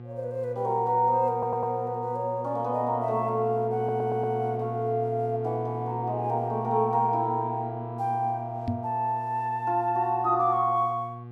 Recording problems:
hum; 60 Hz, harmonics up to 1.2 kHz, SNR 11 dB
audio stuttering; at 1.5 s and at 4 s
microphone thump; at 8.5 s; peak +1 dB vs average level

